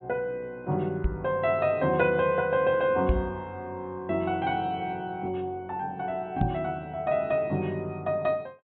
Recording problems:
treble cut off; nothing above 4 kHz
microphone thump; at 1 s, at 3 s and at 6.5 s; peak +6 dB vs average level

